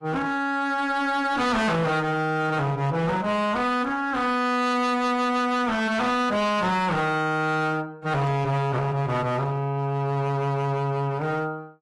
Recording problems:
lossy compression; AAC, log-spectral distance 2 dB, nothing above 11.3 kHz
distortion; hard clipping, uneven, signal-to-distortion ratio 7 dB

